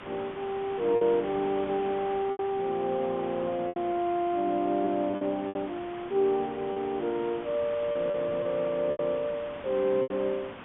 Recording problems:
treble cut off; nothing above 3.5 kHz
background hiss; SNR 14 dB
packet loss; 6% of the sound replaced, filled with repeated pitch periods

